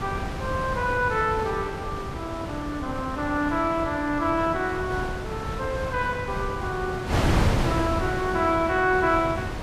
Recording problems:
wind on the microphone; below 720 Hz, SNR 4 dB

